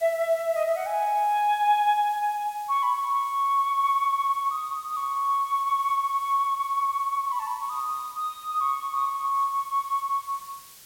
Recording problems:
background hiss; slope +1 dB per octave, SNR 22 dB

